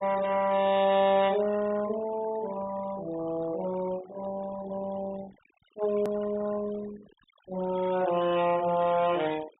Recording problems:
treble missing; nothing above 4 kHz
denoising artefacts; signal-to-artefact ratio 17 dB
edit click; at 6 s

